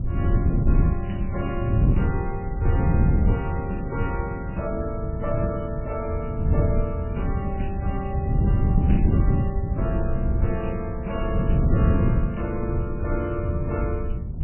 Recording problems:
codec artefacts; MP3, log-spectral distance 2 dB, nothing above 2.5 kHz
low-frequency rumble; below 78 Hz, SNR 6 dB
wind on the microphone; below 150 Hz, SNR -5 dB

